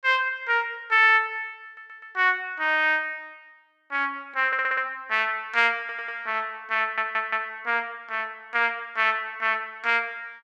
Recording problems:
stutter; 4 times, first at 1.5 s

